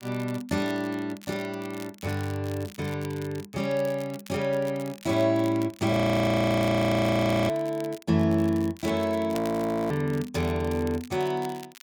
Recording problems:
crackle; vinyl, SNR 20 dB
audio freezing; at 6 s for 1.5 s and at 9.5 s for 0.5 s

